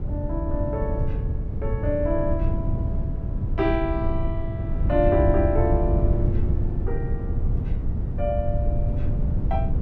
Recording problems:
rumble; below 110 Hz, SNR -2 dB

